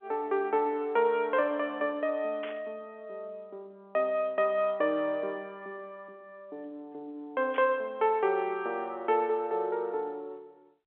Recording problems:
phone line; 280 Hz to 3.6 kHz, G.711
static burst; at 2.5 s and at 7.5 s; peak -8 dB vs average level

